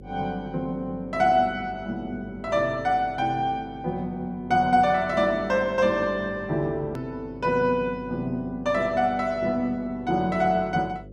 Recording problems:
hum; 50 Hz, harmonics up to 550 Hz, SNR 20 dB
edit click; at 7 s

